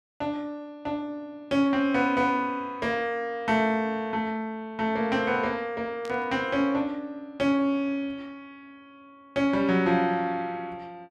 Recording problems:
static burst; at 6 s; peak -12 dB vs average level

